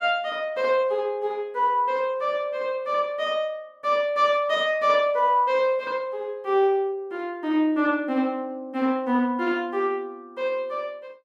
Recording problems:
none

